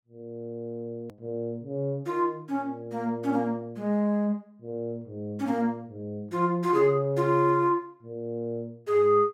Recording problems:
click at an edit; at 1 s

